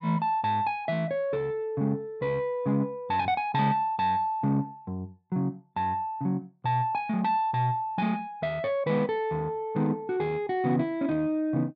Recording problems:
none

